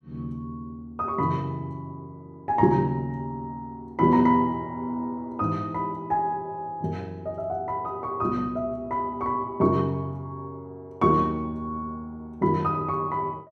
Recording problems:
none

